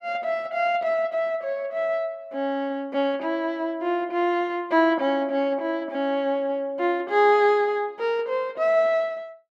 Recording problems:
none

